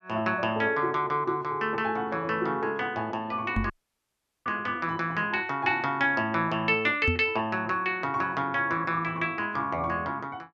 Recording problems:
knock on the microphone; at 3.5 s and at 7 s; peak +3 dB vs average level
audio cutting out; at 3.5 s for 1 s

